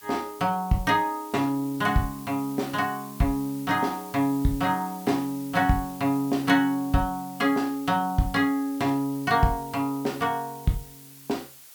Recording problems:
background hiss; slope +1 dB per octave, SNR 18 dB

